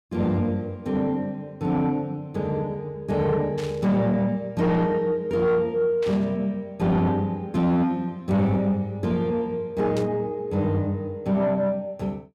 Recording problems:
distorted audio; soft clipping, signal-to-distortion ratio 11 dB
static burst; at 3.5 s, at 6 s and at 10 s; peak -9 dB vs average level

